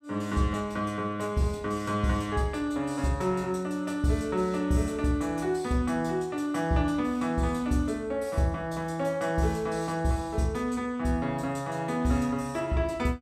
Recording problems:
none

